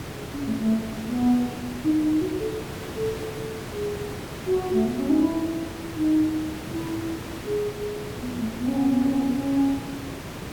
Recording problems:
background hiss; slope -5 dB per octave, SNR 9 dB

